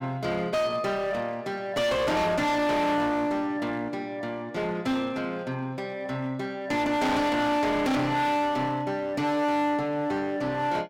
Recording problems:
distorted audio; hard clipping, uneven, signal-to-distortion ratio 6 dB

